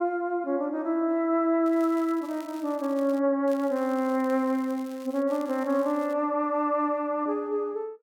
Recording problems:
crackle; from 1.5 to 3 s, from 3.5 to 5 s and at 5.5 s; loose cable, SNR 25 dB

